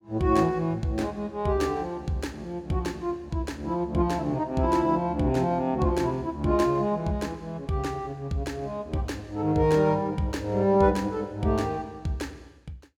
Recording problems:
none

